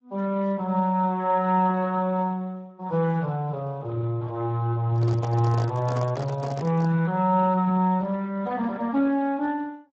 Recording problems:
lossy codec; Speex, log-spectral distance 2 dB
handling noise; from 5 to 7 s; peak -4 dB vs average level

